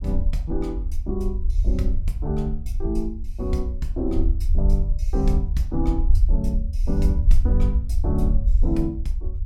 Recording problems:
rumble; below 60 Hz, SNR -4 dB

